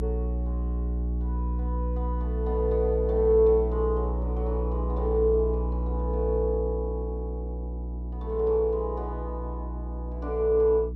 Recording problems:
hum; 60 Hz, harmonics up to 360 Hz, SNR 3 dB

